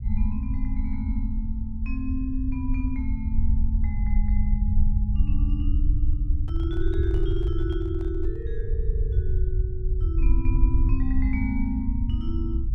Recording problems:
low-frequency rumble; below 70 Hz, SNR -7 dB
microphone handling noise; from 6.5 to 8.5 s; peak -11 dB vs average level

